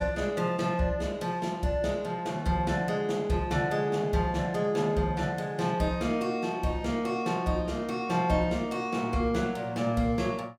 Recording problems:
none

